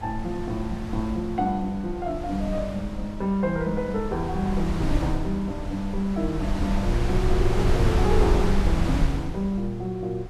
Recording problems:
wind noise; below 110 Hz, SNR 1 dB

